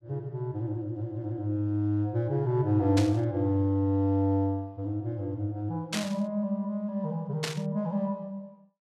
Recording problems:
static burst; at 3 s, at 6 s and at 7.5 s; peak +2 dB vs average level

